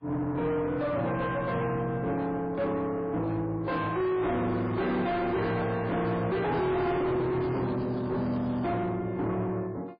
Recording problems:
lossy compression; MP3, log-spectral distance 2 dB
distortion; soft clipping, signal-to-distortion ratio 5 dB
handling noise; from 3.5 to 6 s; peak -2 dB vs average level
crackling; from 4.5 to 8.5 s; loose cable, SNR 27 dB

